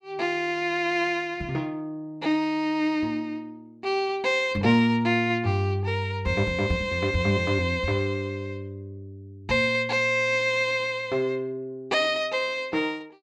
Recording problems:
none

